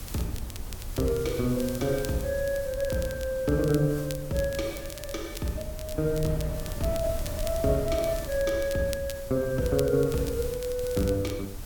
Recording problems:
hiss; slope 0 dB per octave, SNR 15 dB
wind noise; below 100 Hz, SNR 12 dB
crackle; vinyl, SNR 16 dB

